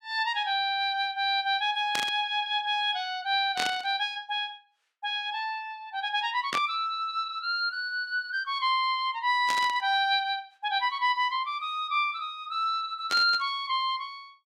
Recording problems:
static burst; 5 times, first at 2 s; peak +1 dB vs average level

